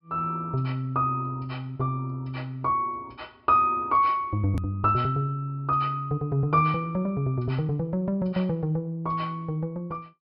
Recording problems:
treble cut off; nothing above 5.5 kHz
click at an edit; at 4.5 s

